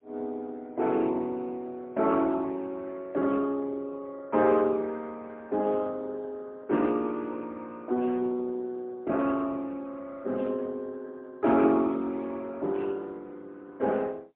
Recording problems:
phone line; 190 Hz to 2.6 kHz, AMR-NB, then MP3

